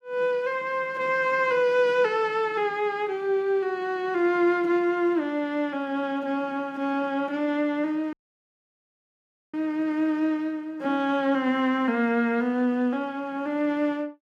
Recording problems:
dropout; at 8 s for 1.5 s

